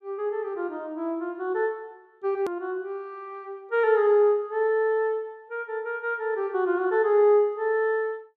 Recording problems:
edit click; at 2.5 s

